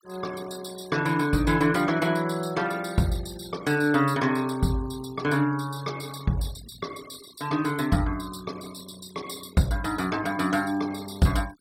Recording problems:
noise reduction artefacts; signal-to-artefact ratio 19 dB

